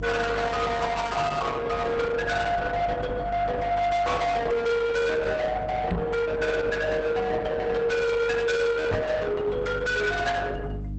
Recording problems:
lossy codec; Opus, log-spectral distance 3 dB, nothing above 8 kHz
distorted audio; soft clipping, signal-to-distortion ratio 8 dB
electrical hum; 50 Hz, harmonics up to 1.4 kHz, SNR 12 dB
microphone bump; at 6 s and at 9 s; peak +4 dB vs average level

